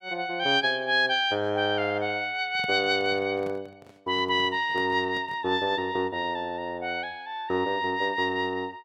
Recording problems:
handling noise; from 2.5 to 5.5 s; peak -10 dB vs average level

